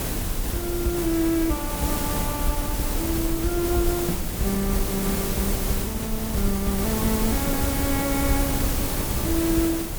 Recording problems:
electrical hum; 50 Hz, harmonics up to 600 Hz, SNR 21 dB
hiss; slope -4 dB per octave, SNR 0 dB
rumble; below 64 Hz, strongest tone 32 Hz, SNR 6 dB

